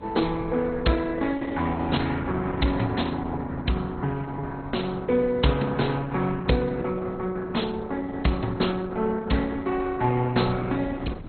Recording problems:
codec artefacts; Opus, then MP2, log-spectral distance 3 dB, nothing above 4.2 kHz
wind noise; below 240 Hz, SNR 17 dB

